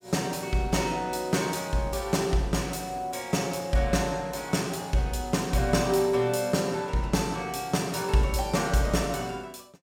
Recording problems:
none

